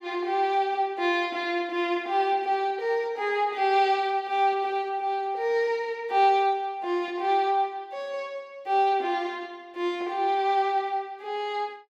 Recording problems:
none

